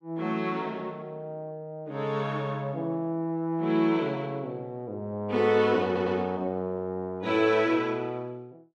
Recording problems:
audio stuttering; at 6 s

